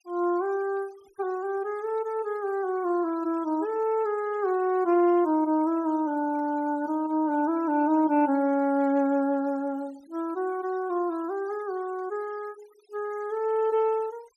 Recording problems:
denoising artefacts; signal-to-artefact ratio 27 dB

